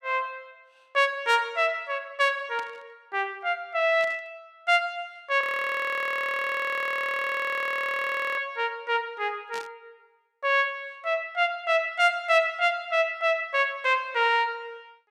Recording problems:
static burst; at 2.5 s, at 4 s and at 9.5 s; peak -11 dB vs average level
frozen audio; at 5.5 s for 3 s

